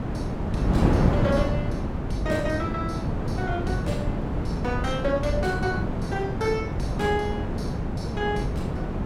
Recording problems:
wind noise; below 340 Hz, SNR -2 dB

